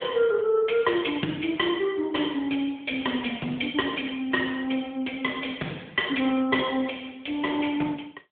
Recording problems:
telephone audio; 190 Hz to 3.5 kHz, AMR-NB

